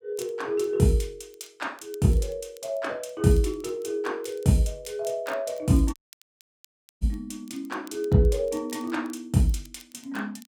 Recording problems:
crackle; vinyl, SNR 28 dB
audio cutting out; at 6 s for 1 s

